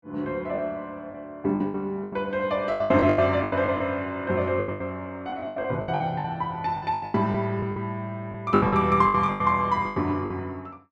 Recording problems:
lost packets; 16% of the sound replaced, filled with the last packet

